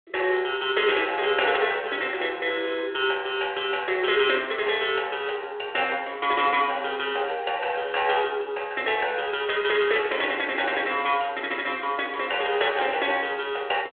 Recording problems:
phone line; 340 Hz to 3.4 kHz, G.726

